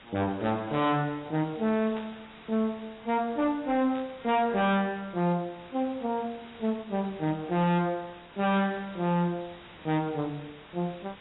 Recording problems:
lossy compression; AAC, log-spectral distance 11 dB, nothing above 3.8 kHz
distorted audio; hard clipping, uneven, signal-to-distortion ratio 7 dB
background hiss; SNR 21 dB
static burst; at 2 s, at 4 s and at 8.5 s; peak -11 dB vs average level

